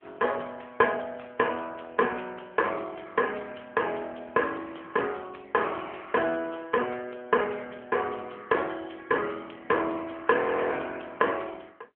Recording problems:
phone line; 190 Hz to 3.2 kHz, AMR-NB
audio freezing; at 10 s

